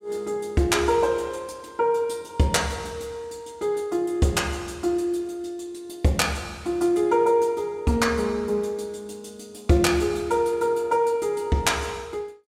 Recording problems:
none

